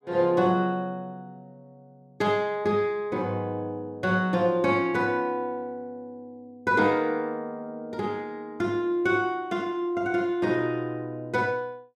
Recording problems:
none

